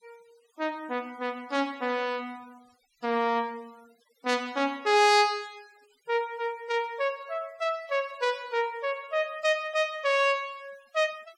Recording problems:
noise reduction artefacts; signal-to-artefact ratio 27 dB

